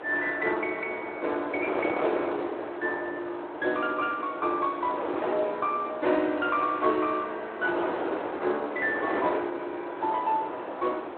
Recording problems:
telephone audio; 260 Hz to 3.6 kHz, Speex
wind noise; below 960 Hz, SNR 5 dB

